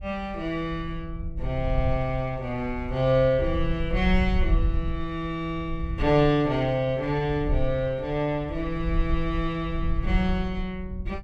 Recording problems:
wind on the microphone; below 66 Hz, SNR 6 dB

